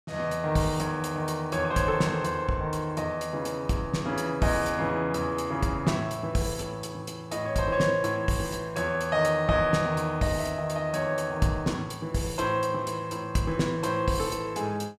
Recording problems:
none

